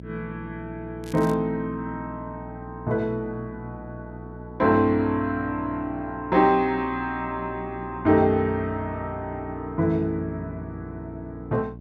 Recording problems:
electrical hum; 60 Hz, harmonics up to 660 Hz, SNR 15 dB
crackle; at 1 s; loose cable, SNR 22 dB

